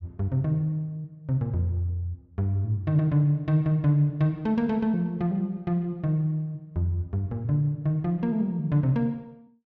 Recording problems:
none

